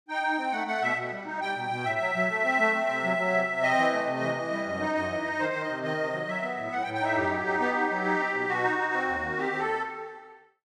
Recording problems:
none

